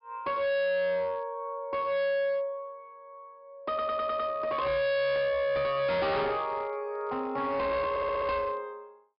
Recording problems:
low-pass filter; nothing above 5.5 kHz
distortion; hard clipping, signal-to-distortion ratio 6 dB
stutter; at 3.5 s and at 8 s

